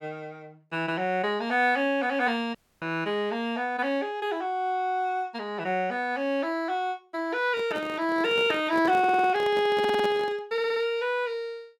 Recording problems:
audio cutting out; at 2.5 s
handling noise; from 7.5 to 10 s; peak -2 dB vs average level
audio stuttering; at 9 s, at 10 s and at 11 s

